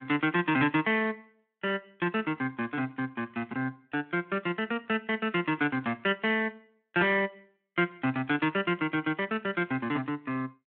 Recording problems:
telephone audio; 190 Hz to 3.4 kHz, Speex

